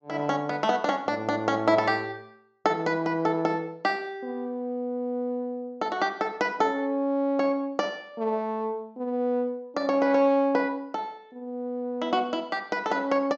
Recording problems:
treble missing; nothing above 8 kHz

